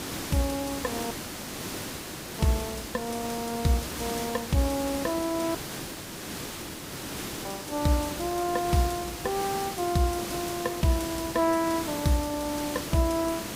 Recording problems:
background hiss; SNR 6 dB
audio cutting out; at 1 s for 1.5 s and at 5.5 s for 2 s

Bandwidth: 15.5 kHz